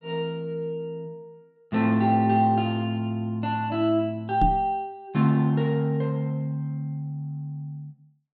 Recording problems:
knock on the microphone; at 4.5 s; peak +2 dB vs average level

